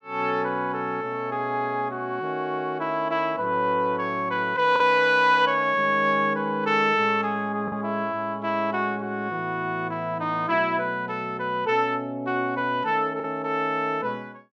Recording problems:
packet loss; 0.8% of the sound replaced, filled with the last packet

